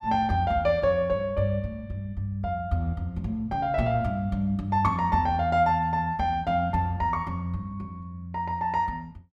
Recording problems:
none

